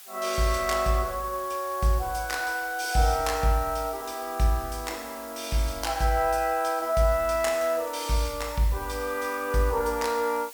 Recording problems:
hiss; slope +2 dB per octave, SNR 16 dB

